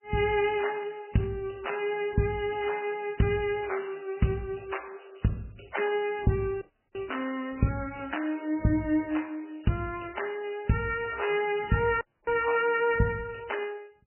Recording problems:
lossy compression; MP3, log-spectral distance 7 dB, nothing above 2.7 kHz
dropout; at 6.5 s and at 12 s

